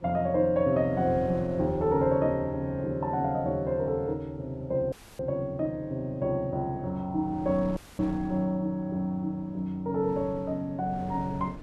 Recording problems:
wind noise; below 340 Hz, SNR 19 dB
dropout; at 5 s and at 8 s

